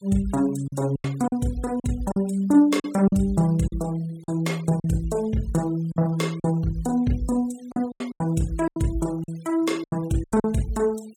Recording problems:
denoising artefacts; signal-to-artefact ratio 24 dB
packet loss; 9% of the sound replaced, filled with silence

